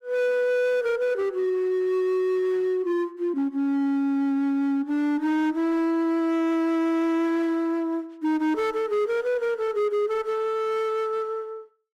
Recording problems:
distorted audio; hard clipping, signal-to-distortion ratio 12 dB

